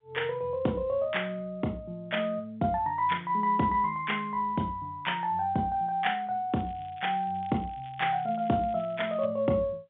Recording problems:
telephone audio; 130 Hz to 3.6 kHz, G.711
crackle; from 6.5 to 9.5 s; loose cable, SNR 27 dB

